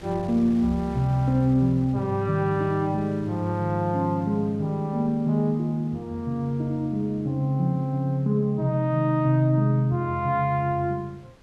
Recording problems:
wind on the microphone; below 1 kHz, SNR 25 dB

